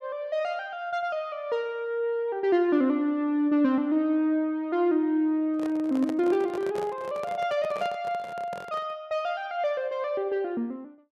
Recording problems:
handling noise; from 5.5 to 9 s; peak -6 dB vs average level

